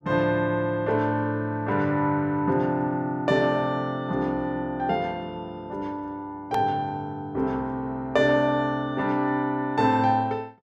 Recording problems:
hard cut with a click; at 6.5 s

